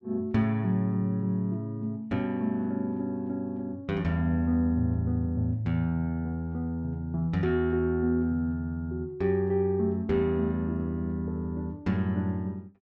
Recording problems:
none

